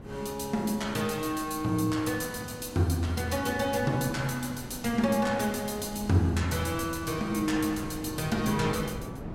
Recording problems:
wind noise; below 380 Hz, SNR 14 dB

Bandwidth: 16 kHz